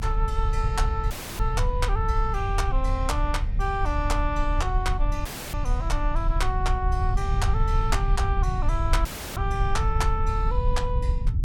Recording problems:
rumble; below 72 Hz, strongest tone 34 Hz, SNR -2 dB
audio cutting out; at 1 s, at 5.5 s and at 9 s; filled with static

